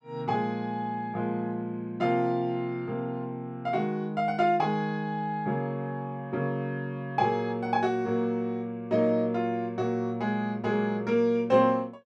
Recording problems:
none

